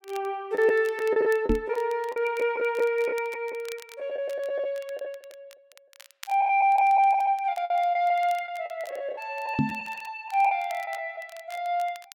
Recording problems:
crackling; vinyl, SNR 24 dB
packet loss; 9% of the sound replaced, filled with the last packet
microphone bump; at 1.5 s and at 9.5 s; peak +5 dB vs average level

